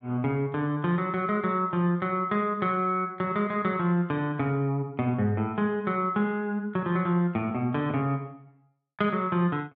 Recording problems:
none

